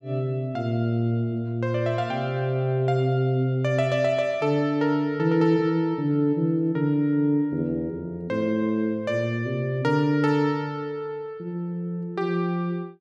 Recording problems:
none

